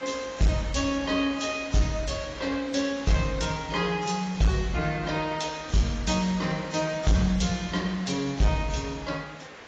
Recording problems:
codec artefacts; AAC, log-spectral distance 5 dB, nothing above 7.3 kHz
distorted audio; hard clipping, signal-to-distortion ratio 11 dB
background hiss; SNR 16 dB

